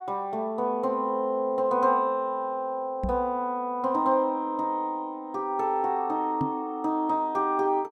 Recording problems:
microphone bump; at 3 s and at 6.5 s; peak +1 dB vs average level

